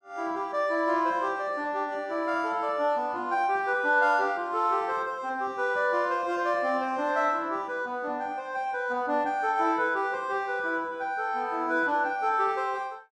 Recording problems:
none

